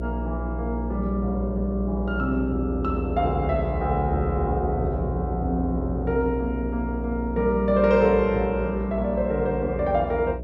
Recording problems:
electrical hum; 60 Hz, harmonics up to 660 Hz, SNR 6 dB

